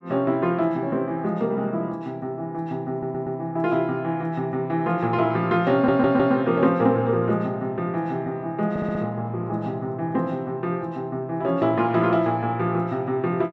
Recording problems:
audio stuttering; at 3 s, at 5.5 s and at 8.5 s

